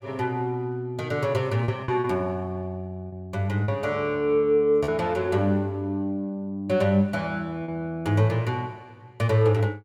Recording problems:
packet loss; 3% of the sound replaced, filled with repeated pitch periods

